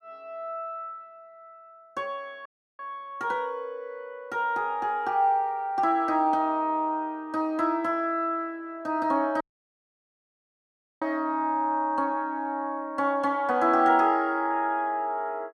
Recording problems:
audio cutting out; at 2.5 s and at 9.5 s for 1.5 s

